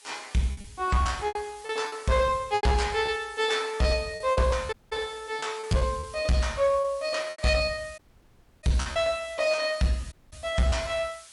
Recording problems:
lossy codec; MP3, log-spectral distance 6 dB
distorted audio; hard clipping, signal-to-distortion ratio 12 dB
background hiss; SNR 21 dB
packet loss; 11% of the sound replaced, filled with repeated pitch periods
audio cutting out; at 4.5 s, at 8 s for 0.5 s and at 10 s

